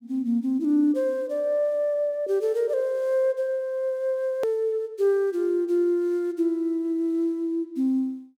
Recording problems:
hard cut with a click; at 4.5 s

